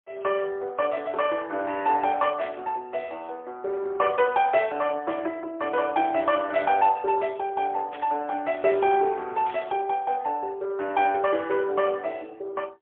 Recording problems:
phone line; 300 Hz to 3.3 kHz, AMR-NB, then MP3
static burst; 5 times, first at 2.5 s; peak -12 dB vs average level

